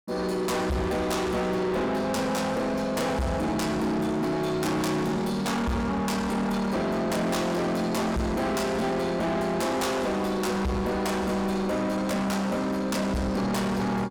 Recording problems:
distortion; soft clipping, signal-to-distortion ratio 7 dB

